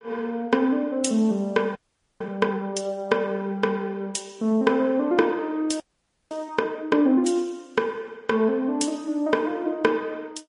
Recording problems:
lossy codec; Vorbis, then MP3, log-spectral distance 2 dB, nothing above 10.4 kHz
audio freezing; at 2 s and at 6 s for 0.5 s

